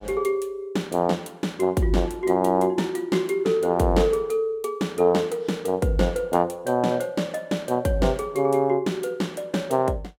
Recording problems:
none

